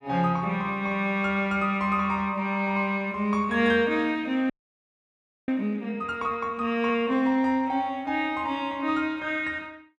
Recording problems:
audio freezing; at 4.5 s for 1 s

